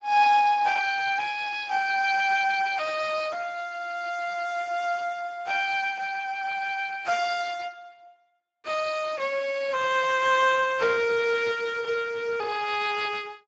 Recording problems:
codec artefacts; Speex, log-spectral distance 5 dB, nothing above 7.3 kHz

